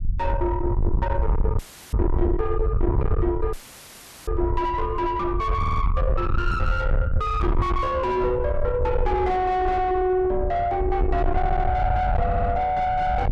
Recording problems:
distortion; soft clipping, signal-to-distortion ratio 6 dB
low-frequency rumble; below 100 Hz, SNR 2 dB
audio cutting out; at 1.5 s and at 3.5 s for 0.5 s; filled with static
stutter; at 5.5 s, at 11 s and at 12 s

